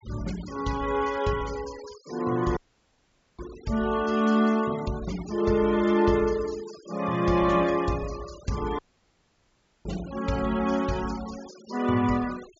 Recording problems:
treble cut off; nothing above 8 kHz
denoising artefacts; signal-to-artefact ratio 18 dB
audio cutting out; at 2.5 s for 1 s and at 9 s for 1 s

